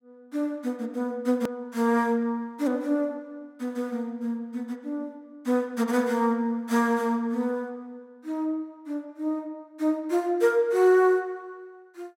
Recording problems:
edit click; at 1.5 s

